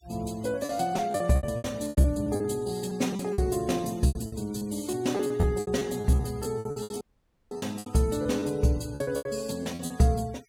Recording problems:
noise reduction artefacts; signal-to-artefact ratio 23 dB
packet loss; 17% of the sound replaced, filled with repeated pitch periods
audio cutting out; at 7 s for 0.5 s

